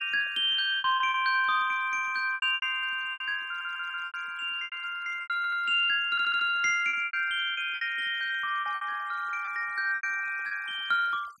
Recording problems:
denoising artefacts; signal-to-artefact ratio 24 dB
packet loss; 11% of the sound replaced, filled with repeated pitch periods
stutter; at 3.5 s, at 5.5 s and at 6 s

